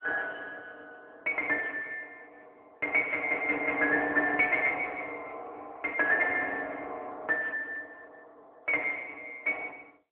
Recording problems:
phone line; 220 Hz to 3.3 kHz, AMR-NB

